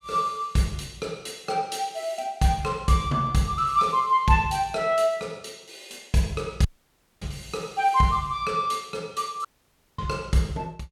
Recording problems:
audio cutting out; at 6.5 s for 0.5 s and at 9.5 s for 0.5 s

